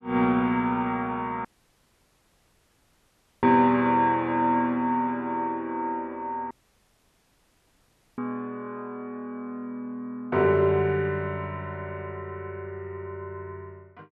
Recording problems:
audio cutting out; at 1.5 s for 2 s and at 6.5 s for 1.5 s

